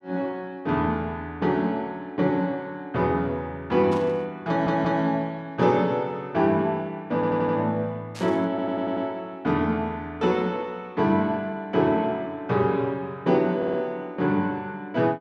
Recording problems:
burst of static; at 4 s and at 8 s; peak -11 dB vs average level
audio stuttering; 4 times, first at 4.5 s

